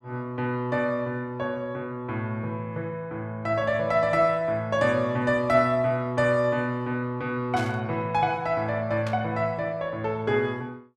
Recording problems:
static burst; at 7.5 s and at 9 s; peak -8 dB vs average level

